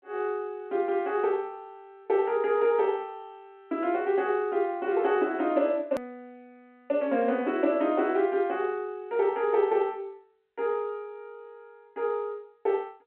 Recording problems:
telephone audio; 190 Hz to 3.3 kHz, G.711
hard cut with a click; at 6 s

